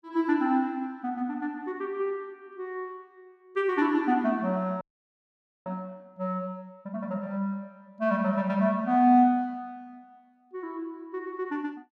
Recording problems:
audio freezing; at 5 s for 1 s

